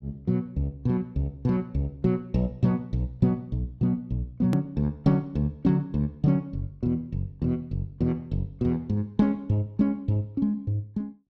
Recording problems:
click at an edit; at 4.5 s

